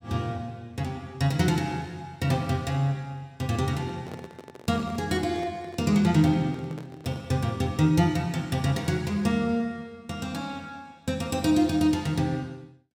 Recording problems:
microphone handling noise; from 3.5 to 7.5 s; peak -10 dB vs average level

